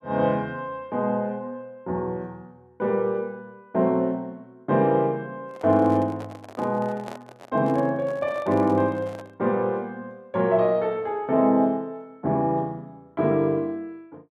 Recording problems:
handling noise; from 5.5 to 9.5 s; peak -9 dB vs average level

